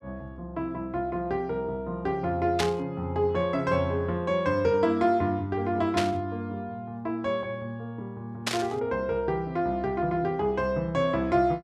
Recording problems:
burst of static; at 2.5 s, at 6 s and at 8.5 s; peak +4 dB vs average level

